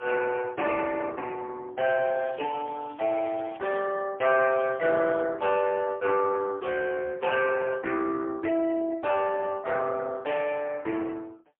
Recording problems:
telephone audio; 280 Hz to 2.6 kHz, AMR-NB, then MP3
crackling; from 2 to 3.5 s and at 4.5 s; loose cable, SNR 27 dB

